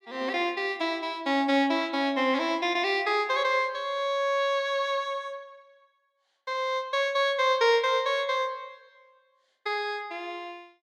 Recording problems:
none

